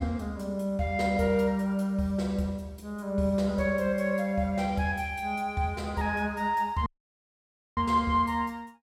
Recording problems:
dropout; at 7 s for 1 s

